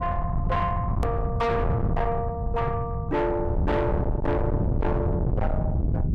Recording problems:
distortion; soft clipping, signal-to-distortion ratio 6 dB
low-frequency rumble; below 180 Hz, SNR 0 dB
hard cut with a click; at 1 s

